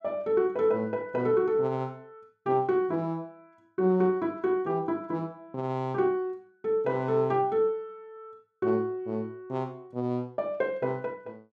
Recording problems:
none

